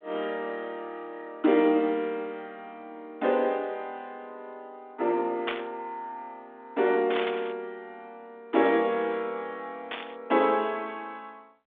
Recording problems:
telephone audio; 240 Hz to 3.7 kHz, G.726
static burst; at 5.5 s, at 7 s and at 10 s; peak +1 dB vs average level

